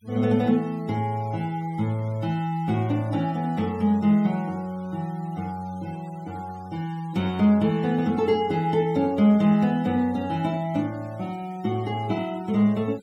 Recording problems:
denoising artefacts; signal-to-artefact ratio 26 dB

